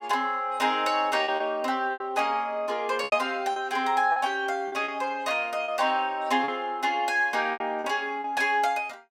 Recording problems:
lost packets; 7% of the sound replaced, filled with repeated pitch periods

